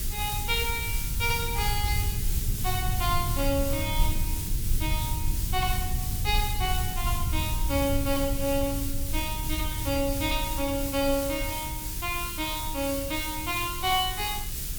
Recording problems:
electrical hum; 50 Hz, harmonics up to 400 Hz, SNR 21 dB
hiss; SNR 3 dB
rumble; below 96 Hz, SNR 3 dB

